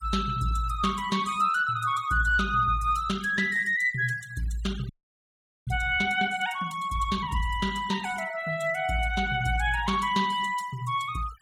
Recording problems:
denoising artefacts; signal-to-artefact ratio 18 dB
frozen audio; at 5 s for 1 s

